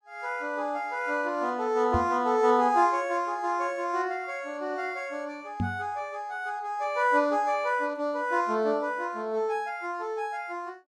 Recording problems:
knock on the microphone; at 2 s and at 5.5 s; peak +2 dB vs average level

